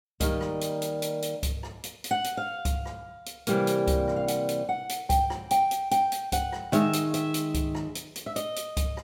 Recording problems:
none

